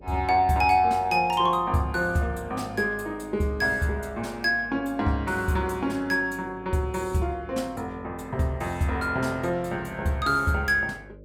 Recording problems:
hum; 50 Hz, harmonics up to 600 Hz, SNR 22 dB

